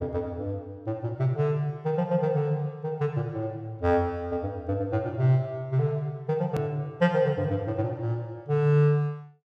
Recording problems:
hard cut with a click; at 6.5 s

